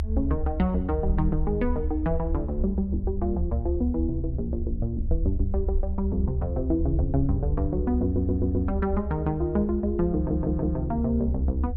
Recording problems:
treble missing; nothing above 5.5 kHz
low-frequency rumble; below 72 Hz, SNR 2 dB
audio stuttering; at 8 s and at 10 s

